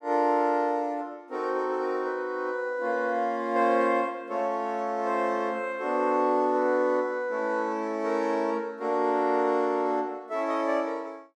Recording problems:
none

